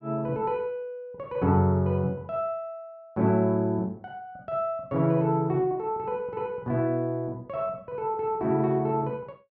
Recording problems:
none

